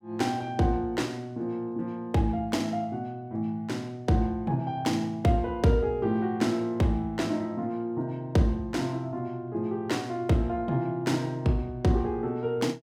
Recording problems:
none

